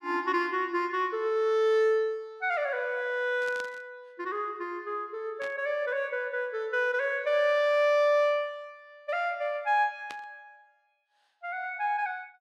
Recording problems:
static burst; at 3.5 s, at 5.5 s and at 10 s; peak -10 dB vs average level

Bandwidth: 15.5 kHz